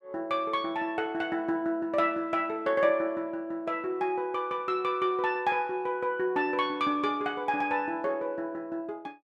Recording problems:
none

